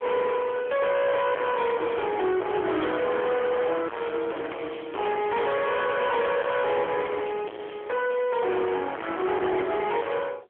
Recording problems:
phone line; 280 Hz to 3.3 kHz, AMR-NB
distortion; soft clipping, signal-to-distortion ratio 4 dB
crackling; from 1 to 3 s, from 4 to 7.5 s and at 8 s; loose cable, SNR 28 dB

